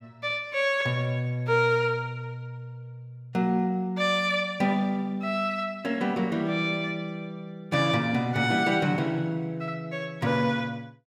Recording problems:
none

